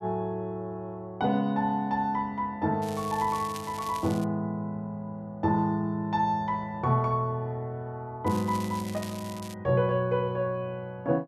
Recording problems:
crackle; from 3 to 4 s and from 8.5 to 9.5 s; loose cable, SNR 15 dB

